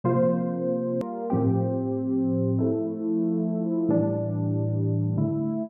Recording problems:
hard cut with a click; at 1 s

